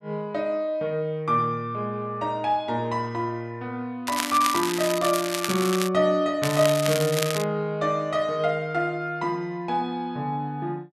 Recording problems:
crackling; from 4 to 6 s and from 6.5 to 7.5 s; loose cable, SNR 5 dB

